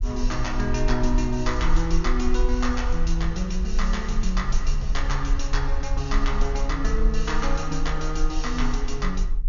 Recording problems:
treble cut off; nothing above 6.8 kHz
low-frequency rumble; below 42 Hz, strongest tone 24 Hz, SNR 0 dB

